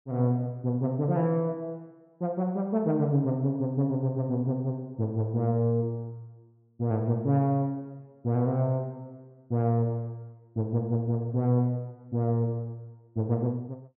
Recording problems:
treble missing; nothing above 3.2 kHz

